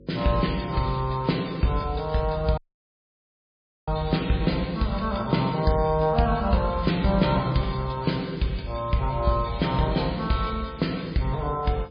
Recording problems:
codec artefacts; MP3, log-spectral distance 5 dB, nothing above 4.2 kHz
hum; 50 Hz, harmonics up to 550 Hz, SNR 24 dB
audio cutting out; at 2.5 s for 1.5 s

